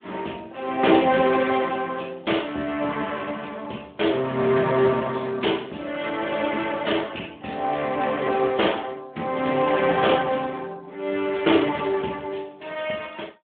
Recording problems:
phone line; 220 Hz to 3.5 kHz, Speex

